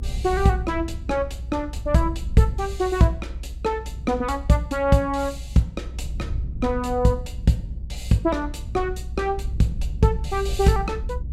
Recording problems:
rumble; below 70 Hz, strongest tone 60 Hz, SNR 9 dB

